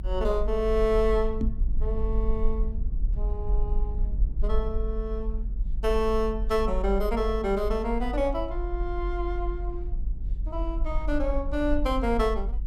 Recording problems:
rumble; below 46 Hz, SNR 3 dB
microphone bump; at 1.5 s; peak +3 dB vs average level

